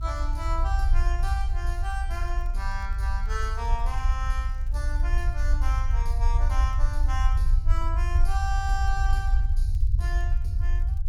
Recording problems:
low-frequency rumble; below 56 Hz, strongest tone 28 Hz, SNR -8 dB
crackle; vinyl, SNR 29 dB

